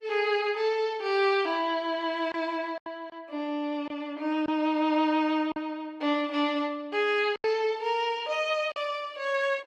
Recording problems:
lossy compression; Opus, log-spectral distance 2 dB
lost packets; 3% of the sound replaced, filled with silence

